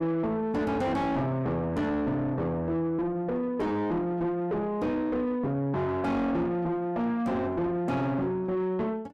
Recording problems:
distorted audio; soft clipping, signal-to-distortion ratio 6 dB

